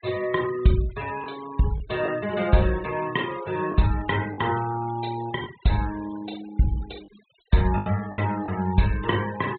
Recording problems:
treble missing; nothing above 4 kHz
noise reduction artefacts; signal-to-artefact ratio 18 dB
packet loss; 4% of the sound replaced, filled with the last packet

